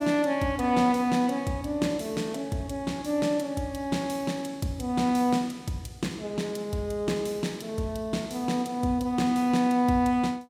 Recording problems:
none

